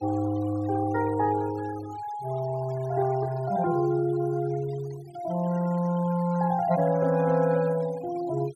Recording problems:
noise reduction artefacts; signal-to-artefact ratio 19 dB

